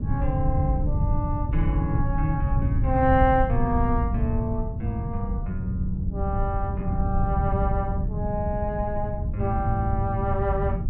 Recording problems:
wind on the microphone; below 110 Hz, SNR 0 dB

